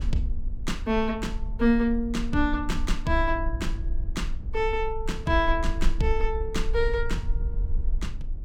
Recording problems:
low-frequency rumble; below 48 Hz, SNR 5 dB

